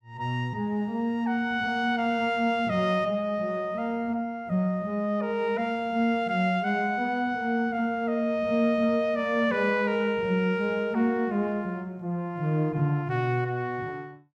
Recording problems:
none

